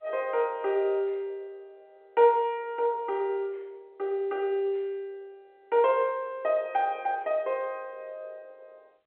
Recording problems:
phone line; 300 Hz to 3.3 kHz, G.711

